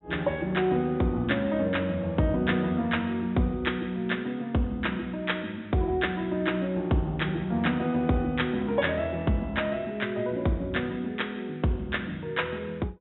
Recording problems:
treble missing; nothing above 3.7 kHz

